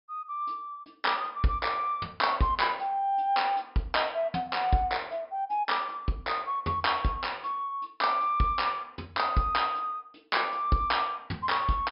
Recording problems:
low-pass filter; nothing above 5.5 kHz

